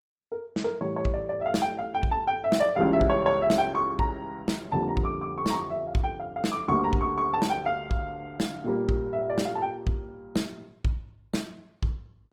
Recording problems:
lossy codec; Opus, log-spectral distance 2 dB, nothing above 19 kHz

